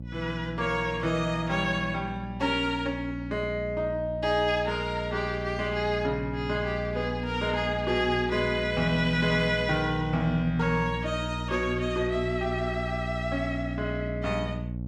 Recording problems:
hum; 60 Hz, harmonics up to 600 Hz, SNR 7 dB

